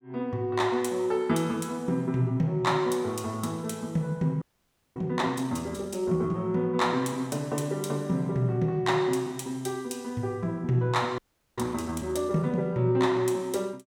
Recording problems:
audio freezing; at 4.5 s for 0.5 s and at 11 s

